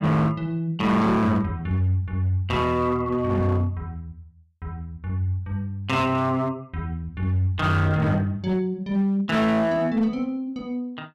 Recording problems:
distorted audio; hard clipping, uneven, signal-to-distortion ratio 11 dB

